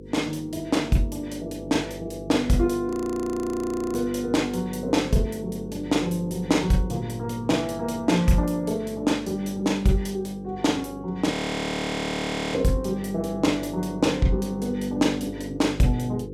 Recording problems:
electrical hum; 50 Hz, harmonics up to 500 Hz, SNR 13 dB
frozen audio; at 3 s for 1 s and at 11 s for 1 s

